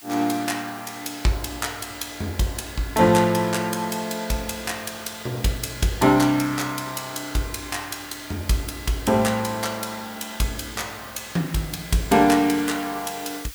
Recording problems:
hiss; SNR 17 dB

